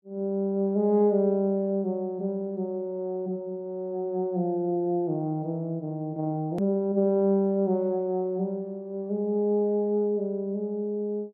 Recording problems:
edit click; at 6.5 s

